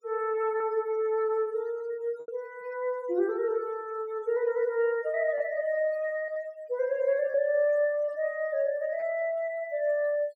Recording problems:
denoising artefacts; signal-to-artefact ratio 27 dB
lost packets; 1.9% of the sound replaced, filled with repeated pitch periods

